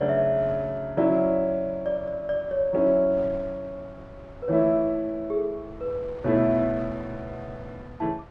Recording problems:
wind on the microphone; below 610 Hz, SNR 20 dB

